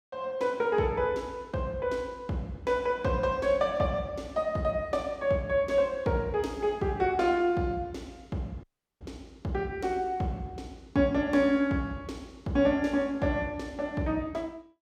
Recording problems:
audio cutting out; at 8.5 s

